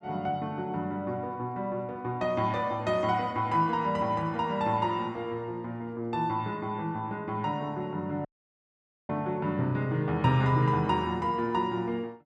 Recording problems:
dropout; at 8.5 s for 1 s

